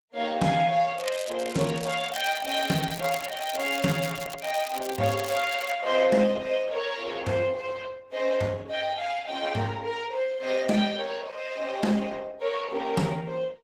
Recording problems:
lossy codec; Opus, log-spectral distance 5 dB
crackle; from 1 to 5.5 s; loose cable, SNR 11 dB

